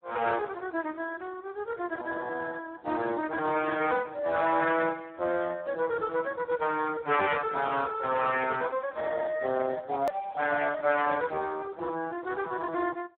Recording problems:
telephone audio; 190 Hz to 3.7 kHz, Speex
edit click; at 10 s

